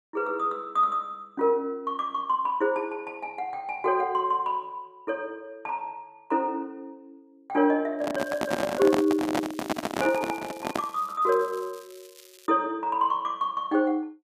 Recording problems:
microphone handling noise; from 8 to 11 s; peak +4 dB vs average level
crackling; from 8 to 11 s and from 11 to 12 s; loose cable, SNR 23 dB

